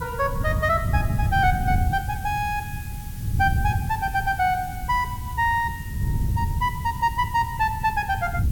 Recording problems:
hiss; slope +2 dB per octave, SNR 18 dB
wind on the microphone; below 130 Hz, SNR 4 dB

